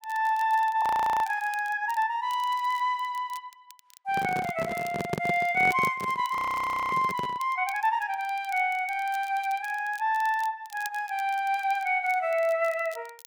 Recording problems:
crackle; vinyl, SNR 23 dB
audio freezing; at 1 s and at 6.5 s for 0.5 s
microphone handling noise; from 4 to 7.5 s; peak +1 dB vs average level

